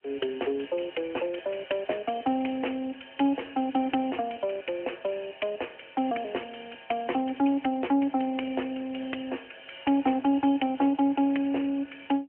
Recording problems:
phone line; 240 Hz to 3.1 kHz, AMR-NB

